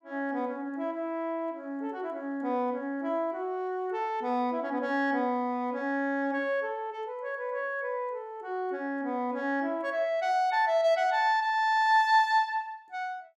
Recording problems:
none

